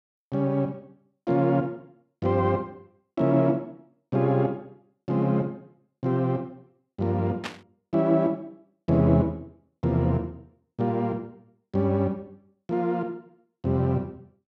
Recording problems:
burst of static; at 7.5 s; peak -3 dB vs average level

